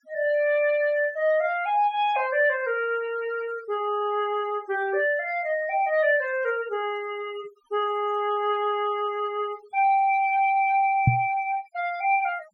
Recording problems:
noise reduction artefacts; signal-to-artefact ratio 22 dB
microphone bump; at 11 s; peak +8 dB vs average level

